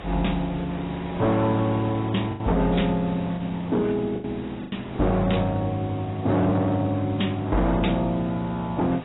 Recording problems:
lossy codec; AAC, log-spectral distance 3 dB, nothing above 3.8 kHz
distortion; hard clipping, signal-to-distortion ratio 10 dB
hiss; SNR 15 dB
packet loss; 3% of the sound replaced, filled with the last packet

